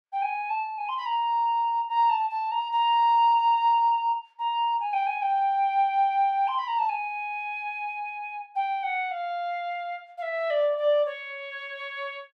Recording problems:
none

